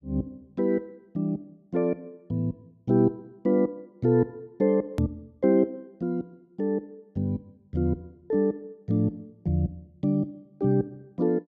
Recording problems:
click at an edit; at 5 s

